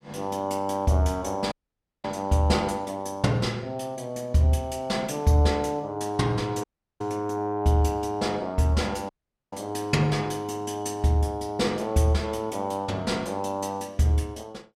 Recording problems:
audio cutting out; at 1.5 s for 0.5 s, at 6.5 s and at 9 s

